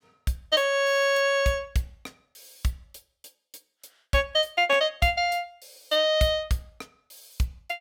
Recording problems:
none

